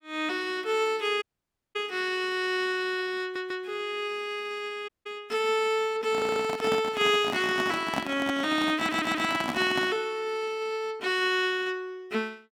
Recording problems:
dropout; at 1 s for 0.5 s and at 5 s
audio stuttering; at 3 s, at 6 s and at 9 s
handling noise; from 6 to 10 s; peak +1 dB vs average level

